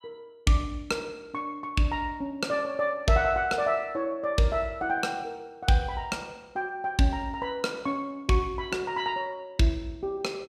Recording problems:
none

